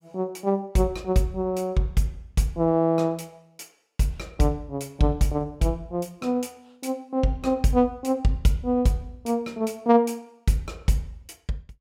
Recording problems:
none

